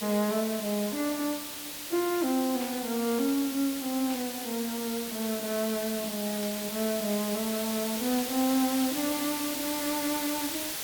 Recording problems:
background hiss; slope 0 dB per octave, SNR 4 dB
static burst; at 2.5 s, at 4 s and at 6.5 s; peak -8 dB vs average level

